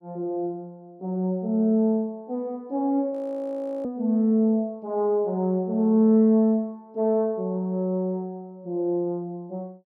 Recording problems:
audio freezing; at 3 s for 0.5 s

